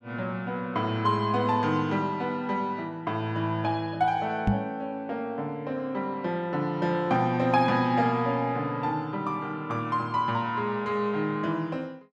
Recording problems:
microphone thump; at 4.5 s; peak +7 dB vs average level

